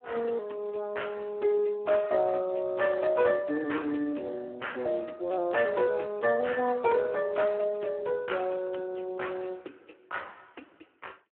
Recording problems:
phone line; 260 Hz to 3.2 kHz, Speex

